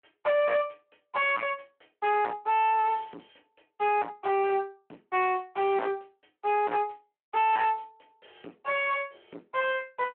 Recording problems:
telephone audio; 240 Hz to 3.1 kHz, Speex
distorted audio; hard clipping, uneven, signal-to-distortion ratio 6 dB

